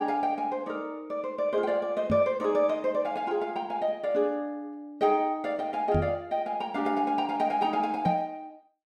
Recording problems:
microphone bump; at 2 s, at 6 s and at 8 s; peak +4 dB vs average level

